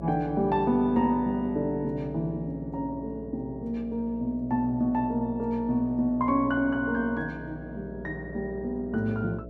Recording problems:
electrical hum; 60 Hz, harmonics up to 660 Hz, SNR 14 dB

